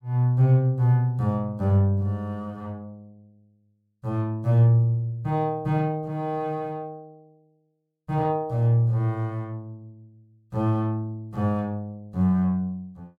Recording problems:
none

